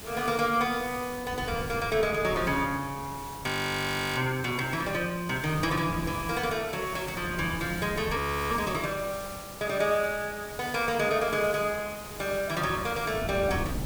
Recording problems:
background hiss; slope -3 dB per octave, SNR 13 dB
wind noise; below 310 Hz, SNR 13 dB
audio freezing; at 3.5 s for 0.5 s and at 8 s

